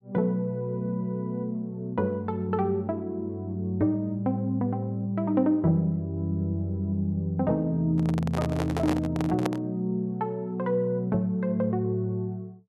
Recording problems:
handling noise; from 8 to 9.5 s; peak +2 dB vs average level

